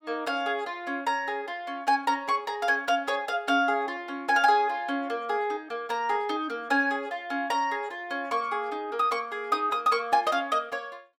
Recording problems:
none

